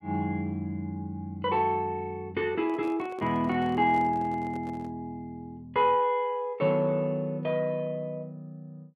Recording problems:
microphone handling noise; from 2.5 to 5 s; peak -11 dB vs average level

